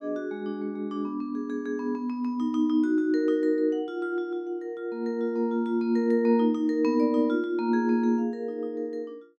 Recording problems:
none

